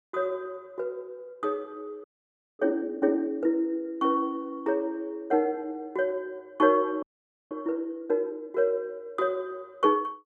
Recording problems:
frozen audio; at 2 s for 0.5 s and at 7 s

